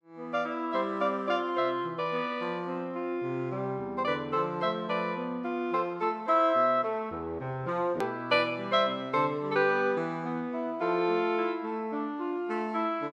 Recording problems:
click at an edit; at 8 s

